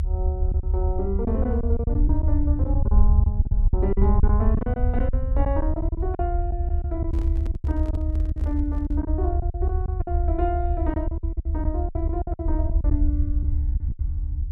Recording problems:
rumble; below 76 Hz, SNR -6 dB
packet loss; 12% of the sound replaced, filled with silence
microphone handling noise; from 7 to 9 s; peak -5 dB vs average level

